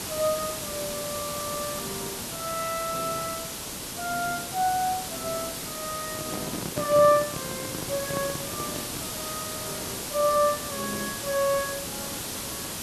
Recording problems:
hiss; slope -2 dB per octave, SNR 3 dB
microphone handling noise; from 6 to 9 s; peak +1 dB vs average level

